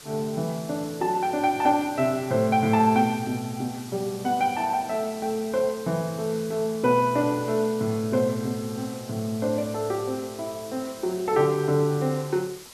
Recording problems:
hiss; slope 0 dB per octave, SNR 17 dB

